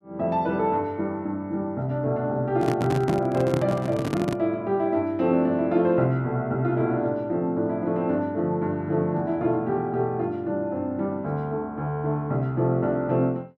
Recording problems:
handling noise; from 2.5 to 4.5 s; peak +2 dB vs average level

